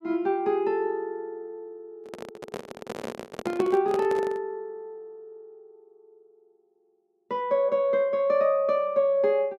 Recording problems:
handling noise; from 2 to 4.5 s; peak -4 dB vs average level

